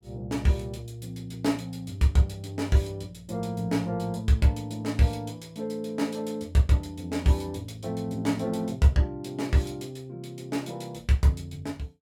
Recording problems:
none

